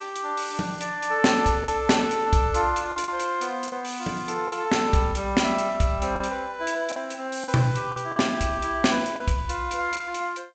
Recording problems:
lossy codec; G.722, log-spectral distance 4 dB, nothing above 7.6 kHz
lost packets; 5% of the sound replaced, filled with the last packet

